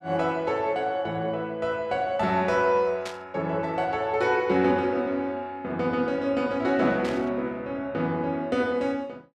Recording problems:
burst of static; at 3 s and at 7 s; peak -6 dB vs average level

